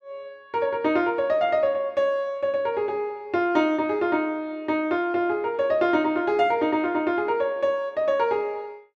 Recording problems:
none

